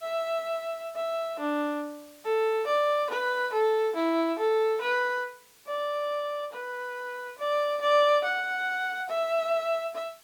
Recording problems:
background hiss; slope +1 dB per octave, SNR 26 dB

